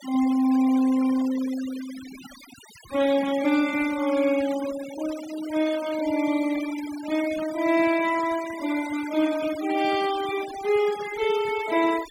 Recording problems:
denoising artefacts; signal-to-artefact ratio 15 dB

